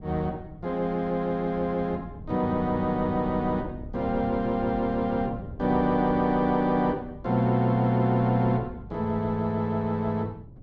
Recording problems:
wind on the microphone; below 180 Hz, SNR 16 dB

